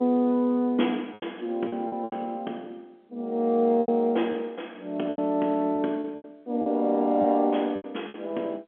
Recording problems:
phone line; 190 Hz to 3.4 kHz, G.711
packet loss; 9% of the sound replaced, filled with repeated pitch periods

